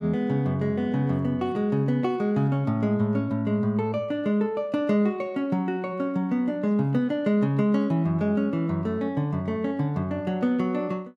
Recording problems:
none

